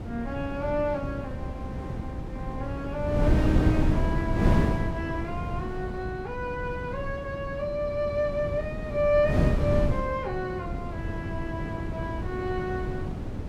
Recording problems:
wind on the microphone; below 240 Hz, SNR 0 dB

